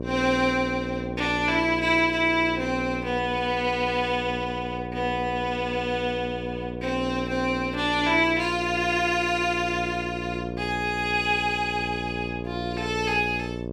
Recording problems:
hum; 60 Hz, harmonics up to 1.1 kHz, SNR 8 dB

